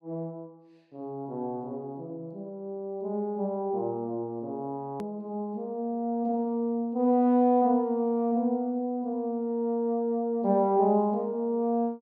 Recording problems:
edit click; at 5 s

